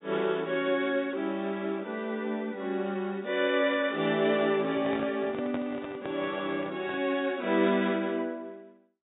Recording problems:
treble missing; nothing above 4 kHz
handling noise; from 4.5 to 7 s; peak -4 dB vs average level

